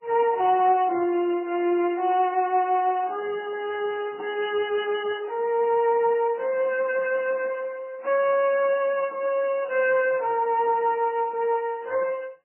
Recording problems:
lossy compression; Speex, then MP3, log-spectral distance 3 dB, nothing above 2.6 kHz

